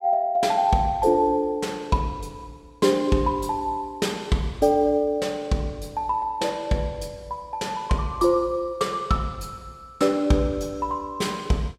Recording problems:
none

